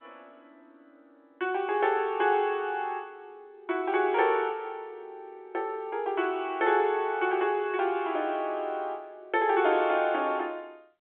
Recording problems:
phone line; 300 Hz to 3.6 kHz, G.711

